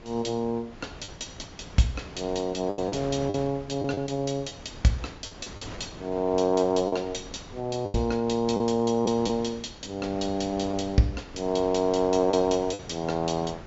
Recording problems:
treble cut off; nothing above 7.5 kHz
wind on the microphone; below 1 kHz, SNR 17 dB
packet loss; 5% of the sound replaced, filled with the last packet

